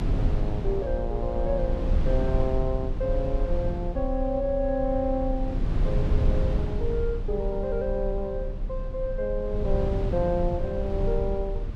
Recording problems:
rumble; below 94 Hz, strongest tone 32 Hz, SNR 0 dB

